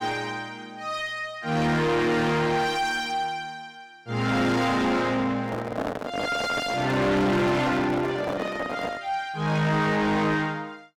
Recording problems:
distortion; soft clipping, signal-to-distortion ratio 6 dB
handling noise; from 5.5 to 9 s; peak 0 dB vs average level

